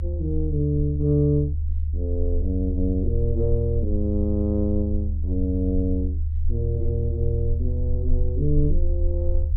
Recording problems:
low-frequency rumble; below 76 Hz, SNR 0 dB

